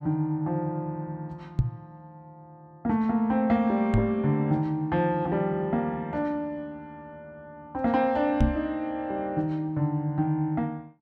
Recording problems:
microphone bump; at 1.5 s, at 4 s and at 8.5 s; peak +7 dB vs average level

